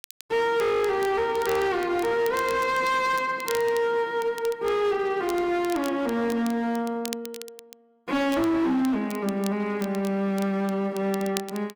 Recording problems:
distorted audio; hard clipping, signal-to-distortion ratio 11 dB
crackle; vinyl, SNR 17 dB

